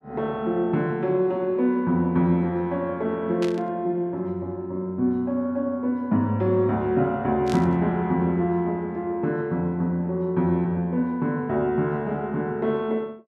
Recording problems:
burst of static; at 3.5 s and at 7.5 s; peak -7 dB vs average level

